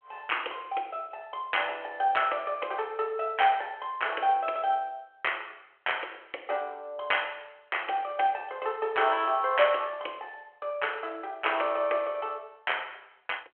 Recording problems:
telephone audio; 300 Hz to 3.3 kHz, G.726

